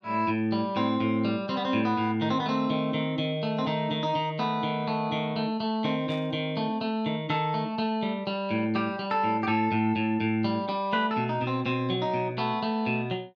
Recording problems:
static burst; at 6 s; peak -15 dB vs average level

